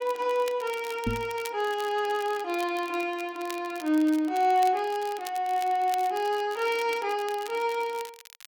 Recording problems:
crackling; vinyl, SNR 18 dB
knock on the microphone; at 1 s; peak +2 dB vs average level

